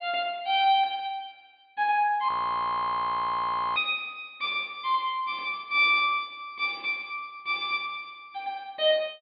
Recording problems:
treble missing; nothing above 4.5 kHz
frozen audio; at 2.5 s for 1.5 s

